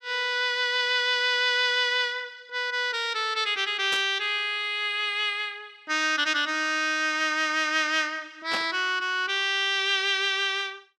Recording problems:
burst of static; at 4 s and at 8.5 s; peak -3 dB vs average level

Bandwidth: 13 kHz